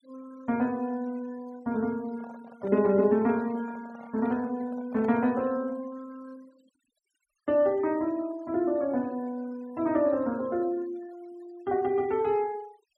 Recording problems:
noise reduction artefacts; signal-to-artefact ratio 25 dB
microphone handling noise; from 2 to 5.5 s; peak -12 dB vs average level

